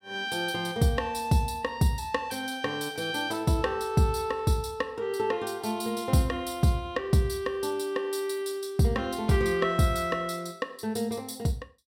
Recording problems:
none

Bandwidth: 16 kHz